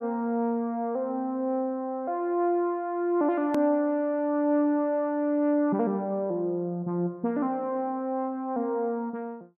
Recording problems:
hard cut with a click; at 3.5 s

